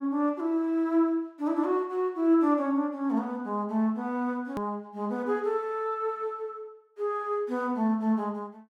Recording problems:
click at an edit; at 4.5 s

